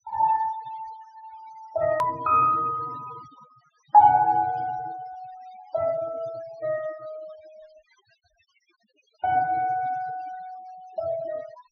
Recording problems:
treble cut off; nothing above 6.2 kHz
denoising artefacts; signal-to-artefact ratio 21 dB
hard cut with a click; at 2 s

